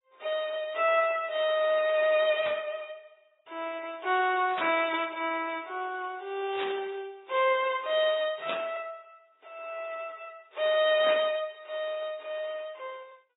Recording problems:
codec artefacts; MP3, then AAC, log-spectral distance 4 dB, nothing above 3.2 kHz
burst of static; 5 times, first at 2.5 s; peak -3 dB vs average level

